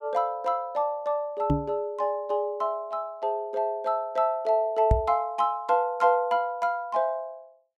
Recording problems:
microphone bump; at 1.5 s and at 5 s; peak +7 dB vs average level

